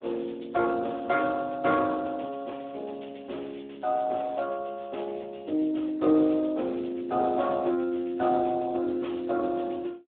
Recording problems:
telephone audio; 260 Hz to 2.8 kHz, Speex

